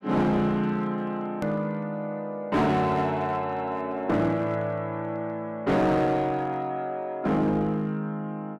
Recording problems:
distorted audio; hard clipping, uneven, signal-to-distortion ratio 10 dB
click at an edit; at 1.5 s

